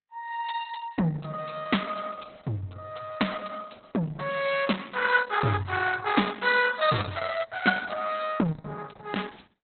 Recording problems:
codec artefacts; Opus, log-spectral distance 7 dB, nothing above 4.1 kHz

